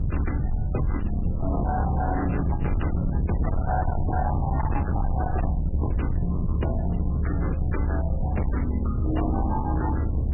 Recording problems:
lossy codec; MP3, log-spectral distance 3 dB, nothing above 2.7 kHz
distorted audio; hard clipping, uneven, signal-to-distortion ratio 7 dB
low-frequency rumble; below 130 Hz, SNR -2 dB
wind noise; below 310 Hz, SNR 18 dB

